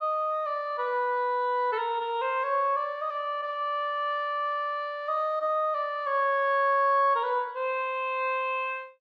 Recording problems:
none

